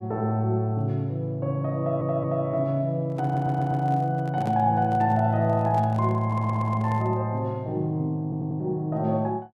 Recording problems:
audio stuttering; 4 times, first at 2 s
handling noise; from 3 to 7 s; peak -8 dB vs average level

